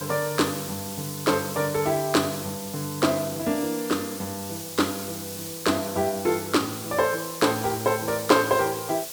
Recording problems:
background hiss; SNR 9 dB

